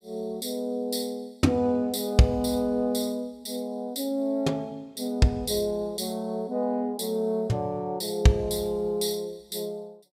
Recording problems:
none

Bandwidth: 15.5 kHz